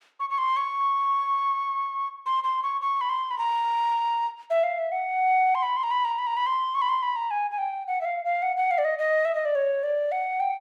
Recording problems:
none

